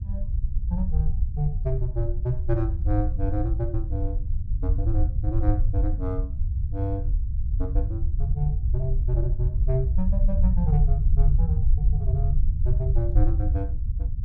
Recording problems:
rumble; below 70 Hz, SNR -4 dB

